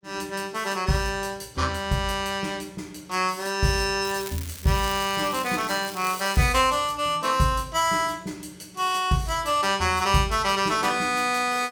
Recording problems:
crackle; from 4 to 6.5 s; loose cable, SNR 14 dB

